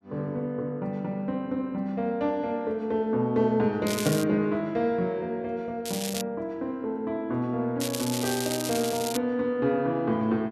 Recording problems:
crackling; at 4 s, at 6 s and from 8 to 9 s; loose cable, SNR 6 dB

